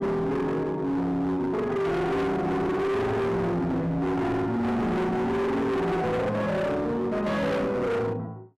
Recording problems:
distortion; hard clipping, signal-to-distortion ratio 6 dB

